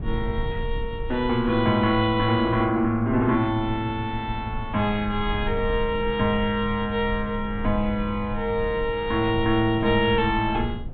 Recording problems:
low-pass filter; nothing above 4 kHz
low-frequency rumble; below 82 Hz, SNR 12 dB

